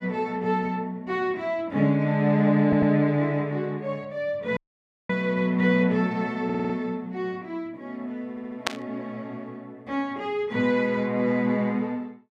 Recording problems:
stutter; at 2.5 s, at 6.5 s and at 8.5 s
dropout; at 4.5 s for 0.5 s
static burst; at 8.5 s; peak +4 dB vs average level

